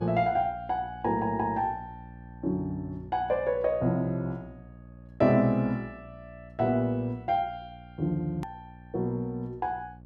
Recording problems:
hum; 60 Hz, harmonics up to 840 Hz, SNR 19 dB
edit click; at 8.5 s

